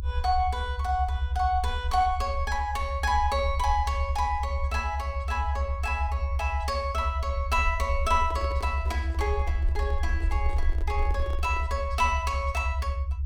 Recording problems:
rumble; below 74 Hz, SNR 1 dB
handling noise; from 8 to 12 s; peak -10 dB vs average level

